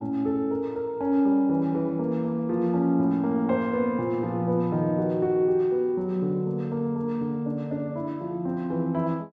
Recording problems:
none

